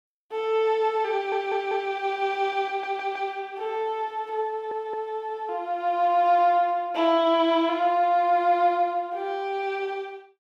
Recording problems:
audio stuttering; at 1 s, at 2.5 s and at 4.5 s

